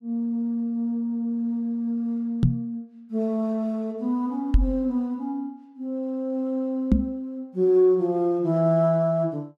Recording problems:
microphone bump; at 2.5 s, at 4.5 s and at 7 s; peak +9 dB vs average level

